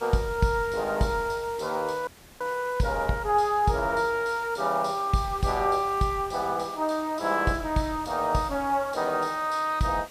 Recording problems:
hiss; slope -2 dB per octave, SNR 20 dB
dropout; at 2 s

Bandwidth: 15 kHz